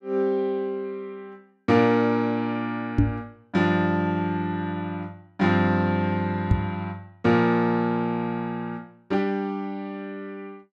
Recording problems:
microphone bump; at 3 s and at 6.5 s; peak +8 dB vs average level

